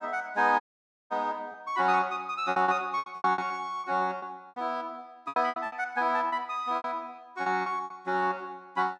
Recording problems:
packet loss; 12% of the sound replaced, filled with repeated pitch periods
audio cutting out; at 0.5 s for 0.5 s

